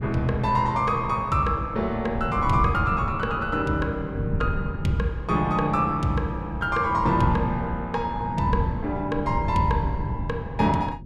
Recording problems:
wind on the microphone; below 170 Hz, SNR 8 dB

